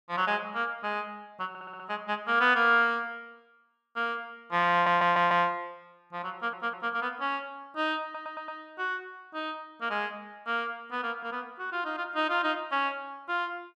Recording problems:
stutter; 4 times, first at 1.5 s

